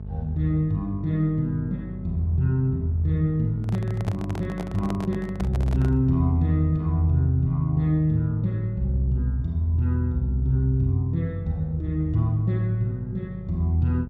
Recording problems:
electrical hum; 50 Hz, harmonics up to 650 Hz, SNR 13 dB
handling noise; from 3.5 to 6 s; peak -6 dB vs average level

